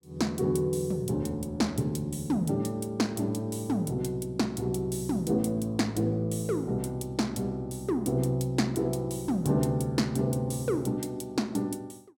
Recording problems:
none

